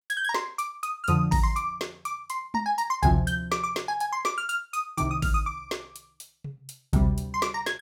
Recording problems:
none

